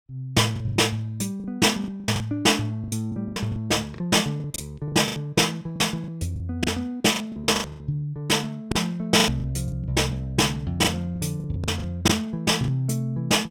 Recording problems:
lost packets; 13% of the sound replaced, filled with the last packet

